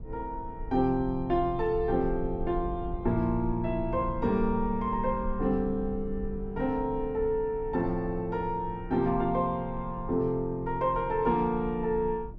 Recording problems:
rumble; below 68 Hz, strongest tone 20 Hz, SNR 12 dB

